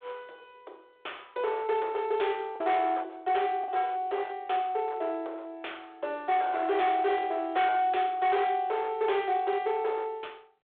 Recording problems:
phone line; 340 Hz to 3.6 kHz, G.726
distorted audio; hard clipping, uneven, signal-to-distortion ratio 11 dB
lost packets; 0.8% of the sound replaced, filled with the last packet

